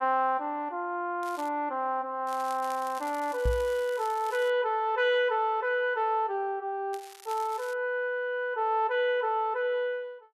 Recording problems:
crackle; at 1 s, from 2.5 to 4.5 s and at 7 s; loose cable, SNR 20 dB
microphone thump; at 3.5 s; peak +3 dB vs average level

